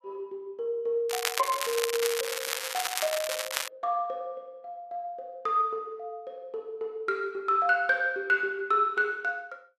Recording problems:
crackling; from 1 to 3.5 s; loose cable, SNR 2 dB

